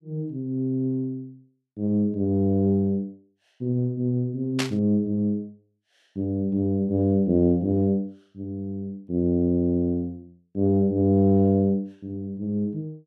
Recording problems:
static burst; at 4.5 s; peak +1 dB vs average level

